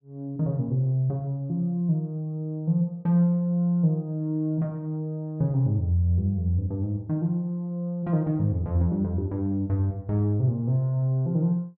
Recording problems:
treble cut off; nothing above 6.8 kHz

